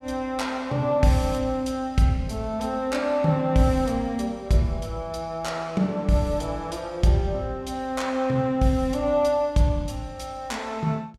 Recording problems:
none

